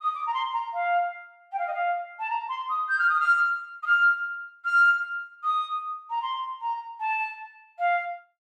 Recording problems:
none

